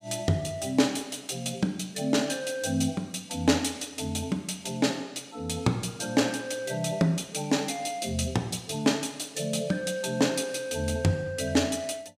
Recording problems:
none

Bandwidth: 15.5 kHz